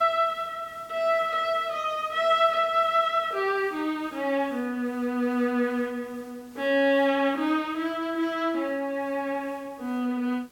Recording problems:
hiss; slope -3 dB per octave, SNR 28 dB

